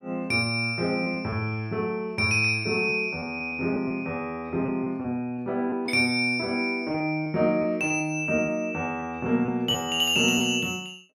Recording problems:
packet loss; 5% of the sound replaced, filled with repeated pitch periods

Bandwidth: 17 kHz